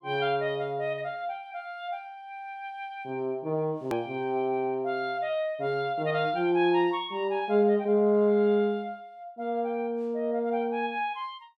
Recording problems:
hard cut with a click; at 4 s

